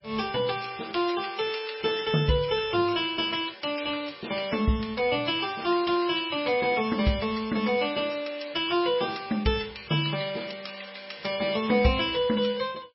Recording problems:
codec artefacts; MP3, log-spectral distance 6 dB, nothing above 5.3 kHz

